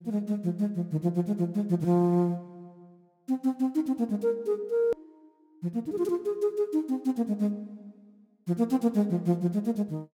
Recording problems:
click at an edit; at 5 s

